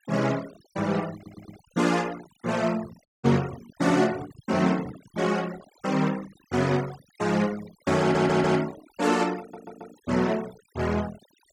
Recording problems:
denoising artefacts; signal-to-artefact ratio 17 dB
stutter; at 1 s, at 8 s and at 9.5 s
handling noise; from 3 to 5.5 s; peak -11 dB vs average level
dropout; at 3 s

